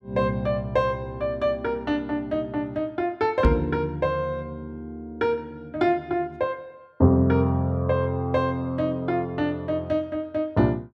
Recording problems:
microphone thump; at 3.5 s; peak +7 dB vs average level

